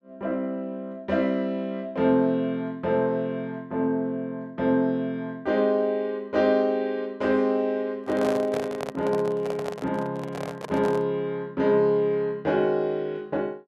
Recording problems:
handling noise; from 8 to 11 s; peak -3 dB vs average level

